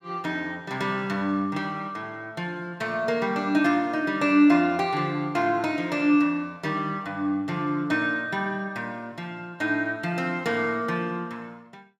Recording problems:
none

